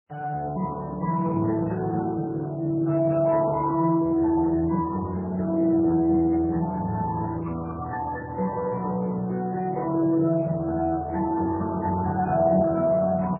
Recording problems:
lossy codec; Speex, then MP3, log-spectral distance 3 dB

